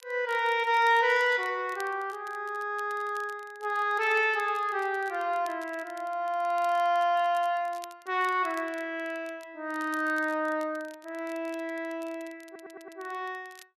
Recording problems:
crackle; vinyl, SNR 25 dB
stutter; at 12 s

